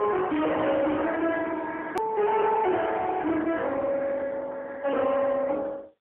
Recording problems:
phone line; 320 Hz to 3.1 kHz, AMR-NB, then MP3
distorted audio; soft clipping, signal-to-distortion ratio 6 dB
edit click; at 2 s

